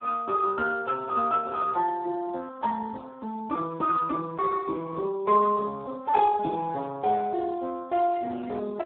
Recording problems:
phone line; 220 Hz to 2.8 kHz, Speex

